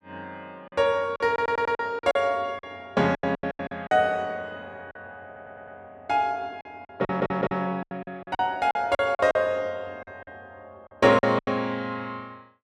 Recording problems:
packet loss; 12% of the sound replaced, filled with silence
audio stuttering; at 1.5 s, at 5.5 s and at 7 s

